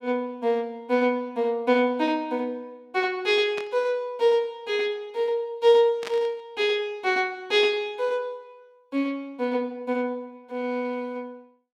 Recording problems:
burst of static; at 3.5 s and at 6 s; peak -6 dB vs average level

